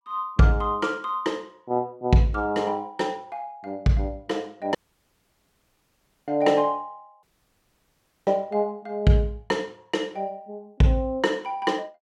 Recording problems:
audio cutting out; at 5 s for 1.5 s and at 7 s for 1 s

